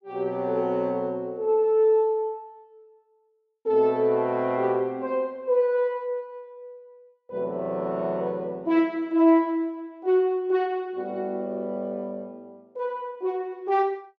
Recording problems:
none

